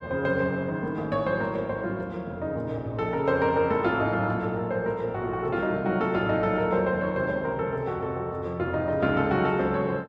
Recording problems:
none

